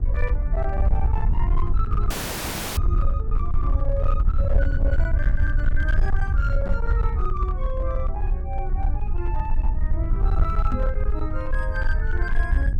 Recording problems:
distorted audio; hard clipping, uneven, signal-to-distortion ratio 9 dB
mains hum; 50 Hz, harmonics up to 1.1 kHz, SNR 16 dB
low-frequency rumble; below 64 Hz, SNR -8 dB
audio cutting out; at 2 s for 0.5 s
knock on the microphone; at 6.5 s and at 11 s; peak +6 dB vs average level

